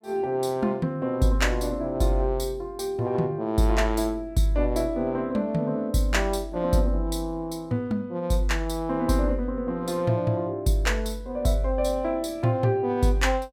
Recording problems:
none

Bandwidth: 17 kHz